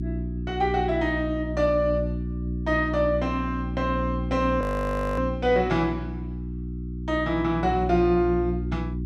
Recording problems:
electrical hum; 60 Hz, harmonics up to 360 Hz, SNR 6 dB
audio freezing; at 4.5 s for 0.5 s

